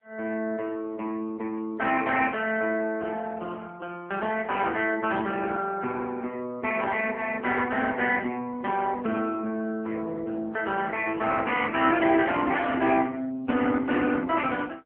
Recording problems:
phone line; 170 Hz to 3.4 kHz, AMR-NB

